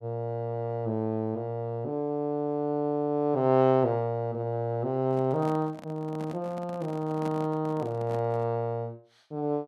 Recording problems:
microphone handling noise; from 5 to 8.5 s; peak -7 dB vs average level

